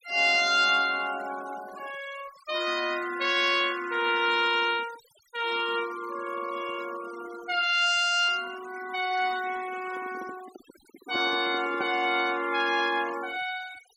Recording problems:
noise reduction artefacts; signal-to-artefact ratio 17 dB
handling noise; from 10 to 12 s; peak -6 dB vs average level

